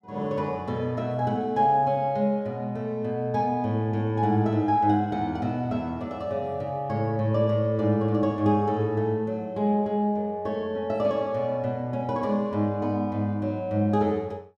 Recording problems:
none

